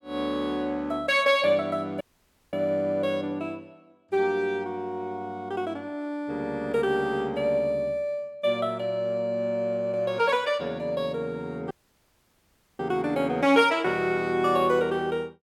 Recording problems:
audio cutting out; at 2 s for 0.5 s and at 12 s for 1 s

